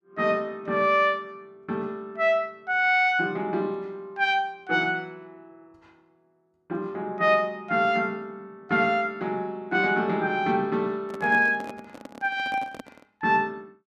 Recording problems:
handling noise; from 11 to 13 s; peak -9 dB vs average level

